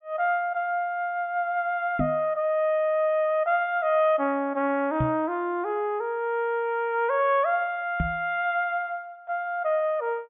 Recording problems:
treble missing; nothing above 3.5 kHz
microphone bump; at 2 s, at 5 s and at 8 s; peak +2 dB vs average level

